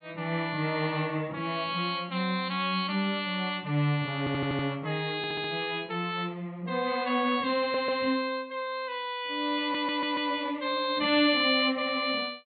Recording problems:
treble missing; nothing above 4.4 kHz
audio stuttering; 4 times, first at 4 s

